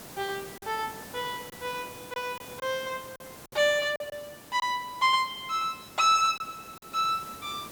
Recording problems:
hiss; slope -4 dB per octave, SNR 16 dB
packet loss; 4% of the sound replaced, filled with silence

